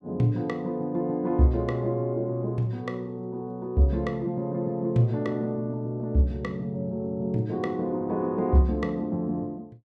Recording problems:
none

